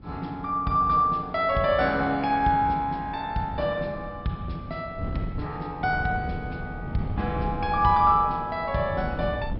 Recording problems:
treble cut off; nothing above 5.4 kHz
wind noise; below 200 Hz, SNR 12 dB

